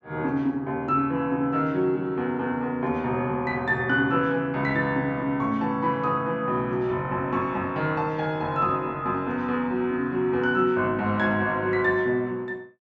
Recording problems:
treble cut off; nothing above 7.6 kHz

